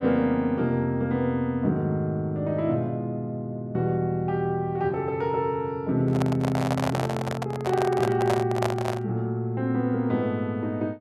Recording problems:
handling noise; from 6 to 9 s; peak +3 dB vs average level

